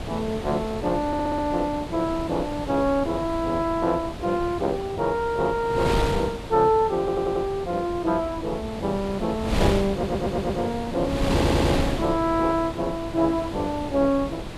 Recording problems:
wind noise; below 720 Hz, SNR 6 dB
stutter; 4 times, first at 1 s

